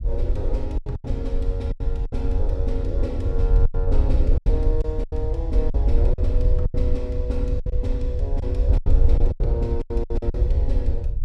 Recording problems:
rumble; below 66 Hz, SNR -7 dB
lost packets; 11% of the sound replaced, filled with silence

